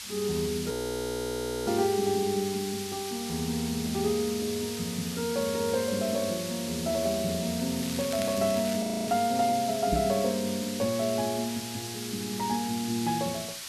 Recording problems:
hiss; slope +4 dB per octave, SNR 7 dB
frozen audio; at 0.5 s for 1 s and at 9 s
crackle; at 8 s; loose cable, SNR 12 dB
microphone bump; at 10 s; peak +2 dB vs average level

